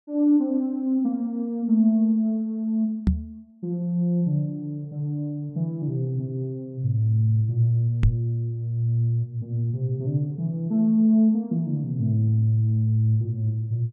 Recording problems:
knock on the microphone; at 3 s and at 8 s; peak +8 dB vs average level

